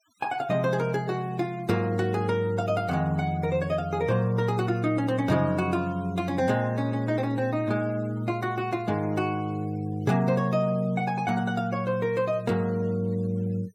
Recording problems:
noise reduction artefacts; signal-to-artefact ratio 26 dB

